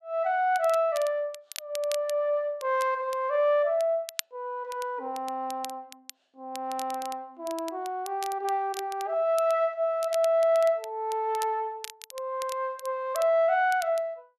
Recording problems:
crackling; vinyl, SNR 16 dB

